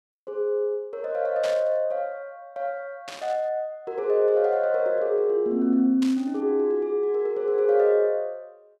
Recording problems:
static burst; at 1.5 s, at 3 s and at 6 s; peak -8 dB vs average level

